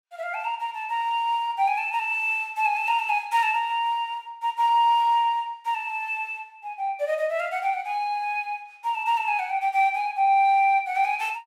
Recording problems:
none

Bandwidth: 16 kHz